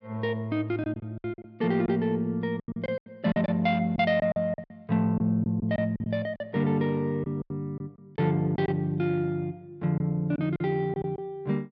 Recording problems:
packet loss; 10% of the sound replaced, filled with silence

